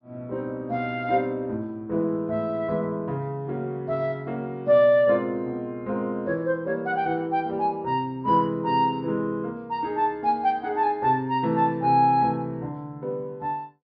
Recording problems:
low-pass filter; nothing above 5.5 kHz

